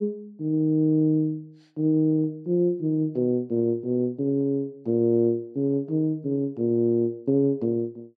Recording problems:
none

